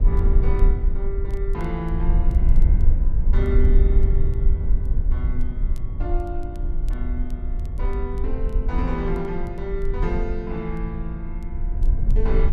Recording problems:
rumble; below 54 Hz, strongest tone 20 Hz, SNR -7 dB
crackle; vinyl, SNR 30 dB

